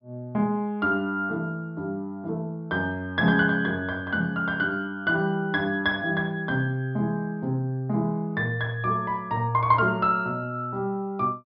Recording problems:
low-pass filter; nothing above 5.5 kHz

